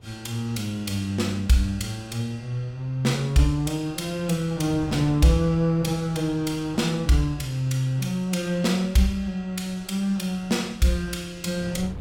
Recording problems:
wind noise; below 190 Hz, SNR 20 dB

